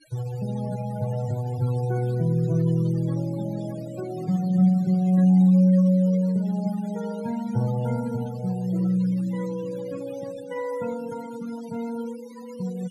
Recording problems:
denoising artefacts; signal-to-artefact ratio 19 dB

